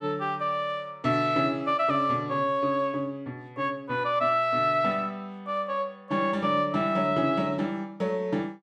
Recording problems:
none

